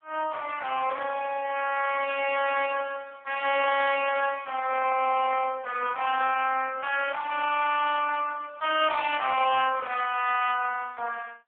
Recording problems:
telephone audio; 390 Hz to 3.3 kHz, AMR-NB

